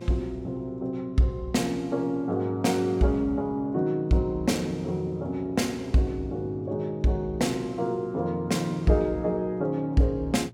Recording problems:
electrical hum; 60 Hz, harmonics up to 600 Hz, SNR 21 dB

